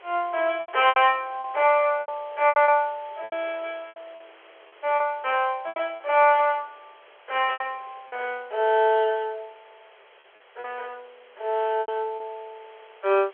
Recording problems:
telephone audio; 340 Hz to 3.4 kHz, G.711
hiss; SNR 27 dB
lost packets; 9% of the sound replaced, filled with repeated pitch periods

